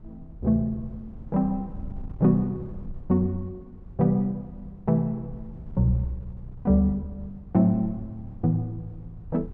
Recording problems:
wind on the microphone; below 100 Hz, SNR 18 dB

